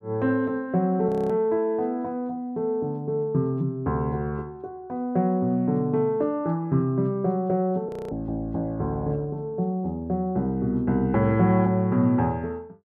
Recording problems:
frozen audio; at 1 s and at 8 s

